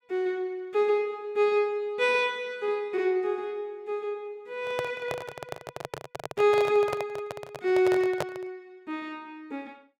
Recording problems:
microphone handling noise; from 4.5 to 8.5 s; peak +2 dB vs average level

